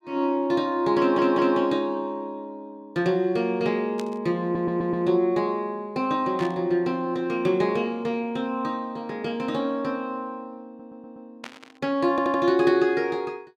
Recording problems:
stutter; 4 times, first at 1 s
burst of static; at 4 s, at 6.5 s and at 11 s; peak -9 dB vs average level

